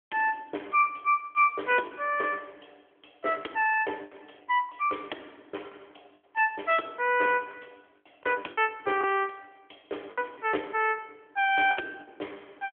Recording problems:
phone line; 260 Hz to 3.3 kHz, AMR-NB
packet loss; 5% of the sound replaced, filled with the last packet

